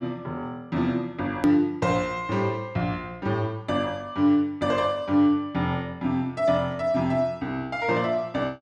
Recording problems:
hard cut with a click; at 1.5 s

